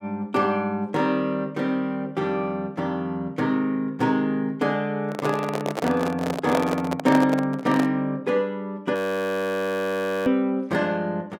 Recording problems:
handling noise; from 5 to 8 s; peak +2 dB vs average level
audio freezing; at 9 s for 1.5 s

